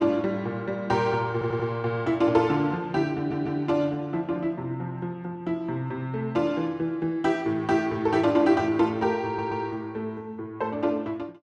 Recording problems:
audio stuttering; at 1.5 s, at 3 s and at 9.5 s

